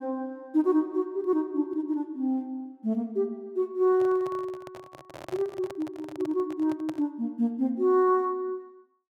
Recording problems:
microphone handling noise; from 4 to 7 s; peak -7 dB vs average level

